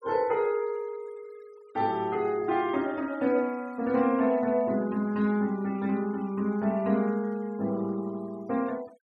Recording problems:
denoising artefacts; signal-to-artefact ratio 26 dB

